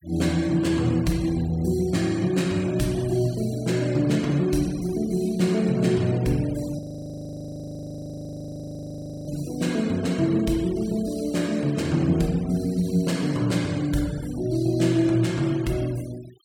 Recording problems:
noise reduction artefacts; signal-to-artefact ratio 22 dB
audio freezing; at 7 s for 2.5 s

